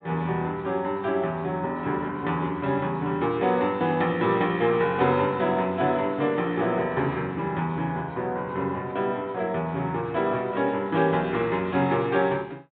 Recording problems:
treble cut off; nothing above 4 kHz

